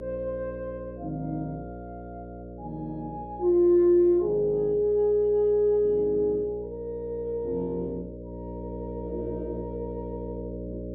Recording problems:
hum; 60 Hz, harmonics up to 600 Hz, SNR 13 dB

